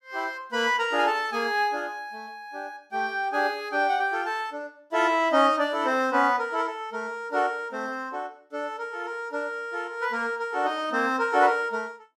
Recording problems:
none

